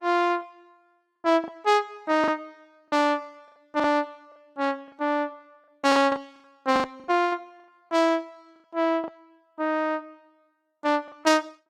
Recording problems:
lossy codec; Opus, log-spectral distance 2 dB, nothing above 17.7 kHz
lost packets; 8% of the sound replaced, filled with the last packet

